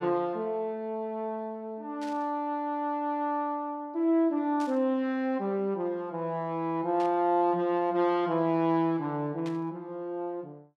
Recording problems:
static burst; 4 times, first at 2 s; peak -12 dB vs average level

